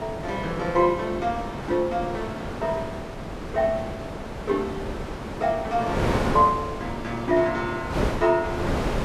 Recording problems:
wind on the microphone; below 800 Hz, SNR 5 dB

